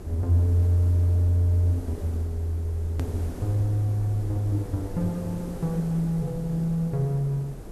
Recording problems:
background hiss; SNR 15 dB
rumble; below 66 Hz, SNR 19 dB
click at an edit; at 3 s

